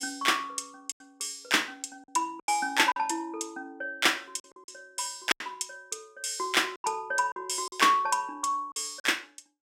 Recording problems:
packet loss; 7% of the sound replaced, filled with silence

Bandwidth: 16 kHz